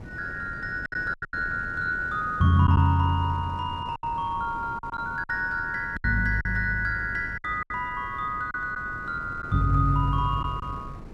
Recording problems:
wind on the microphone; below 350 Hz, SNR 16 dB
lost packets; 7% of the sound replaced, filled with silence

